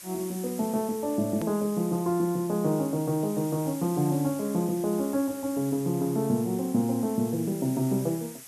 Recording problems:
hiss; slope +1 dB per octave, SNR 15 dB
hard cut with a click; at 1.5 s

